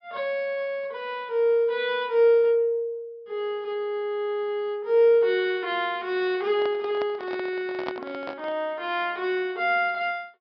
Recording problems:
low-pass filter; nothing above 5.5 kHz
handling noise; from 6.5 to 8.5 s; peak -3 dB vs average level

